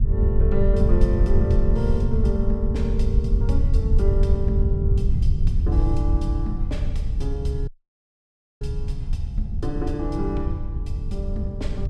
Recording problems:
low-frequency rumble; below 82 Hz, SNR -5 dB
audio cutting out; at 7.5 s for 1 s

